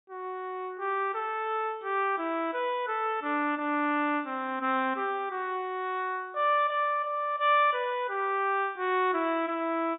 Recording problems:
treble missing; nothing above 4 kHz

